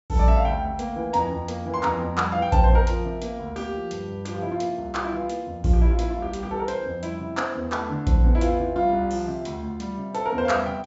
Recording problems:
treble missing; nothing above 8 kHz

